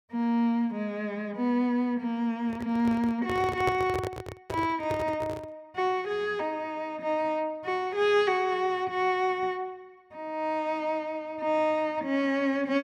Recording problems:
handling noise; from 2.5 to 5.5 s; peak +1 dB vs average level

